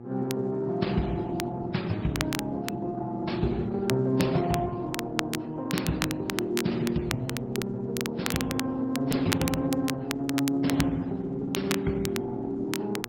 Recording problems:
codec artefacts; MP3, then Opus, log-spectral distance 2 dB
hum; 60 Hz, harmonics up to 1.2 kHz, SNR 14 dB
crackling; vinyl, SNR 7 dB

